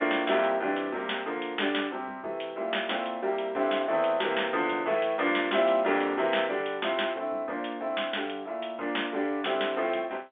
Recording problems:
phone line; 320 Hz to 3.6 kHz, G.711

